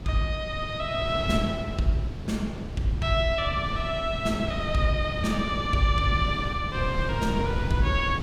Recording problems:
wind noise; below 200 Hz, SNR 6 dB

